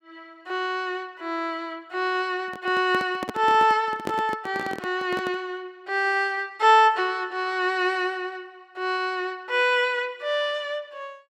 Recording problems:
microphone handling noise; from 2.5 to 5.5 s; peak -1 dB vs average level

